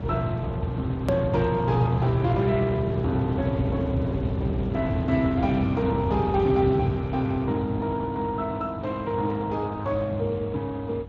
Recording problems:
codec artefacts; Speex, log-spectral distance 2 dB, nothing above 13.1 kHz
rumble; below 210 Hz, SNR 5 dB
hard cut with a click; at 1 s

